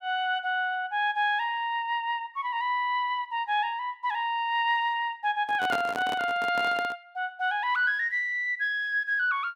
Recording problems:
microphone handling noise; from 5.5 to 7 s; peak -1 dB vs average level

